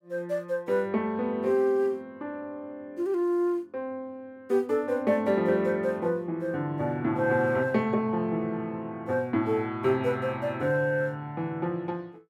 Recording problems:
none

